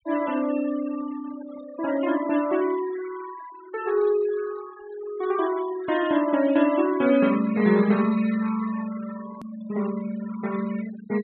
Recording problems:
treble cut off; nothing above 4 kHz
denoising artefacts; signal-to-artefact ratio 15 dB
edit click; at 9.5 s

